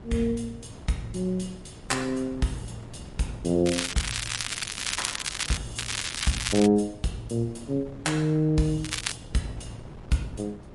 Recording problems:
lossy compression; MP3, log-spectral distance 7 dB, nothing above 11 kHz
wind noise; below 380 Hz, SNR 17 dB
crackling; from 3.5 to 5.5 s, at 6 s and at 9 s; loose cable, SNR 2 dB

